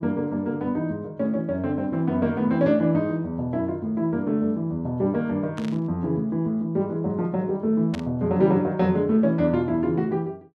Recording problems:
static burst; at 5.5 s and at 8 s; peak -8 dB vs average level

